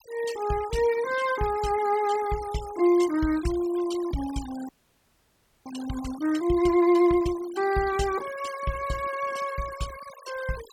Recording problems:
noise reduction artefacts; signal-to-artefact ratio 17 dB
audio freezing; at 4.5 s for 1 s

